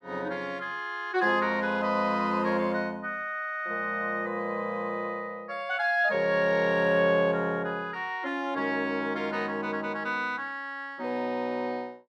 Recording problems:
none

